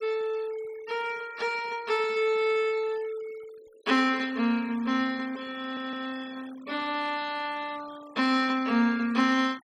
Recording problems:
noise reduction artefacts; signal-to-artefact ratio 22 dB
stutter; at 5.5 s

